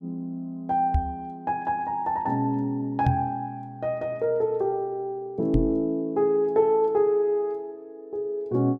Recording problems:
microphone bump; at 1 s, at 3 s and at 5.5 s; peak +5 dB vs average level

